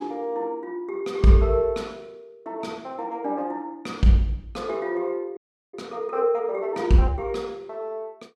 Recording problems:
audio freezing; at 5.5 s

